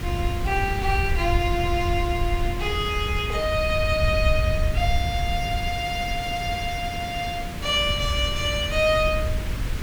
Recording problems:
hiss; SNR 10 dB
wind on the microphone; below 86 Hz, SNR 4 dB

